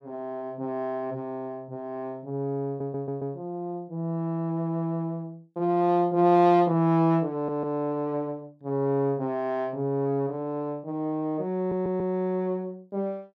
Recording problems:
audio stuttering; at 2.5 s, at 7.5 s and at 12 s

